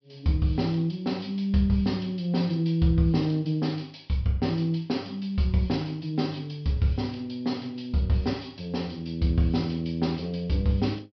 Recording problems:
treble cut off; nothing above 5.5 kHz

